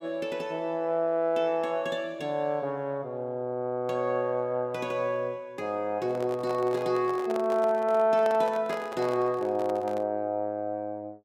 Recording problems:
handling noise; from 6 to 10 s; peak -4 dB vs average level

